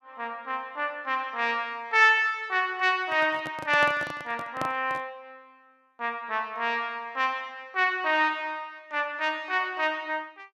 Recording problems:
microphone handling noise; from 3 to 5 s; peak -2 dB vs average level

